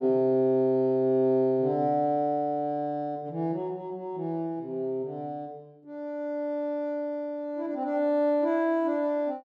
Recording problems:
none

